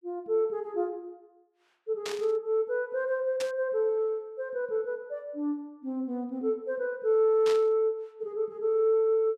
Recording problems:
static burst; at 2 s, at 3.5 s and at 7.5 s; peak -4 dB vs average level

